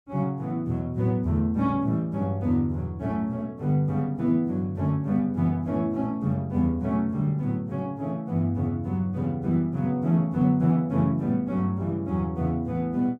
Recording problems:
none

